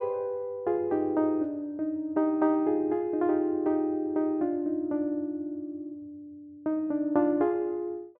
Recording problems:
none

